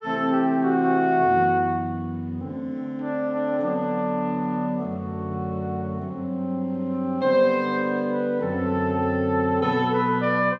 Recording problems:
none

